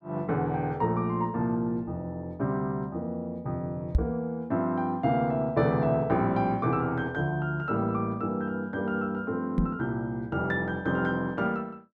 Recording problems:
microphone thump; at 4 s and at 9.5 s; peak +8 dB vs average level

